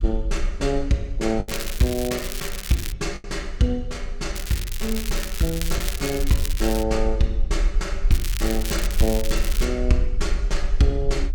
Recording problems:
low-frequency rumble; below 46 Hz, strongest tone 20 Hz, SNR 4 dB
packet loss; 1.6% of the sound replaced, filled with the last packet
crackle; from 1.5 to 3 s, from 4.5 to 7 s and from 8 to 9.5 s; loose cable, SNR 7 dB

